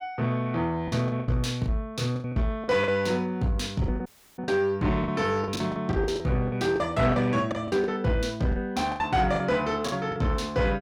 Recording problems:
distortion; soft clipping, signal-to-distortion ratio 11 dB
packet loss; 12% of the sound replaced, filled with the last packet
audio cutting out; at 4 s

